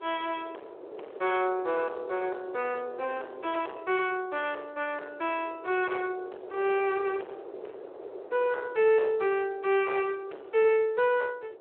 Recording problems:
phone line; 320 Hz to 3.3 kHz, Speex
distorted audio; soft clipping, signal-to-distortion ratio 9 dB
wind on the microphone; below 570 Hz, SNR 16 dB

